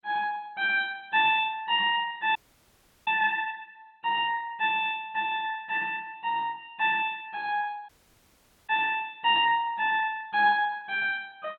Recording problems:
codec artefacts; MP2, log-spectral distance 3 dB, nothing above 3.6 kHz
audio cutting out; at 2.5 s for 0.5 s and at 8 s for 1 s

